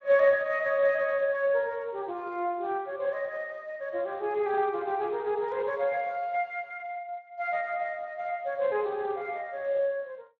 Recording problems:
codec artefacts; Speex, log-spectral distance 2 dB

